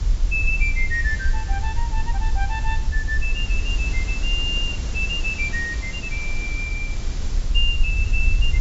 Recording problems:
treble cut off; nothing above 8 kHz
background hiss; SNR 10 dB
rumble; below 54 Hz, SNR 0 dB

